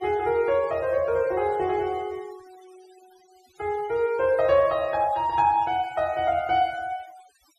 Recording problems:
noise reduction artefacts; signal-to-artefact ratio 25 dB

